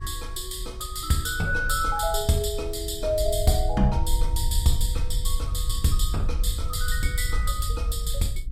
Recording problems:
lossy codec; Vorbis, log-spectral distance 3 dB, nothing above 14.3 kHz
wind on the microphone; below 60 Hz, SNR 3 dB

